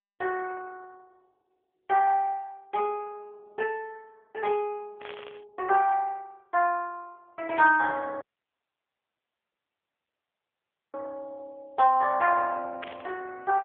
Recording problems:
phone line; 340 Hz to 3.4 kHz, AMR-NB
static burst; at 5 s, at 7.5 s and at 13 s; peak -7 dB vs average level
dropout; at 8 s for 2.5 s

